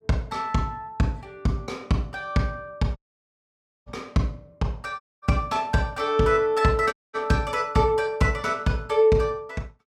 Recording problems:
dropout; at 3 s for 1 s, at 5 s and at 7 s

